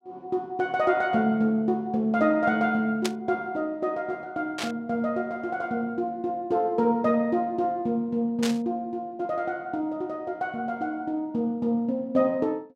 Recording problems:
static burst; at 3 s, at 4.5 s and at 8.5 s; peak +1 dB vs average level

